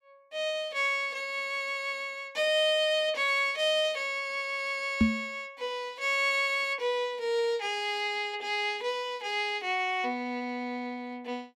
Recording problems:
microphone thump; at 5 s; peak +9 dB vs average level

